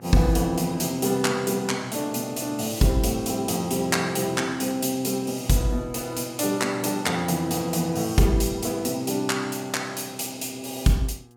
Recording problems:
hum; 60 Hz, harmonics up to 1.7 kHz, SNR 26 dB

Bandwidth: 17.5 kHz